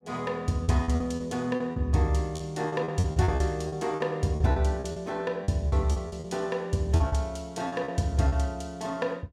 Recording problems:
packet loss; 13% of the sound replaced, filled with repeated pitch periods

